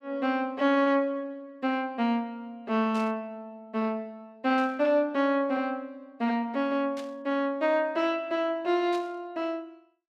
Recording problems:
burst of static; 4 times, first at 3 s; peak -12 dB vs average level

